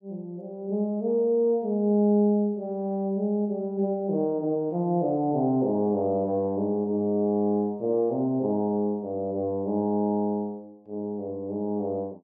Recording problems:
none

